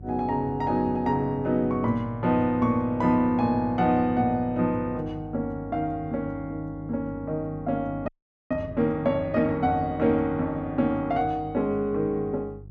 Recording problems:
hum; 50 Hz, harmonics up to 400 Hz, SNR 17 dB
audio freezing; at 8 s

